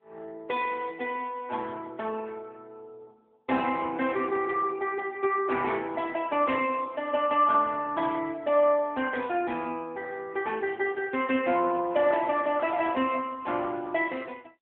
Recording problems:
telephone audio; 220 Hz to 3.3 kHz, AMR-NB

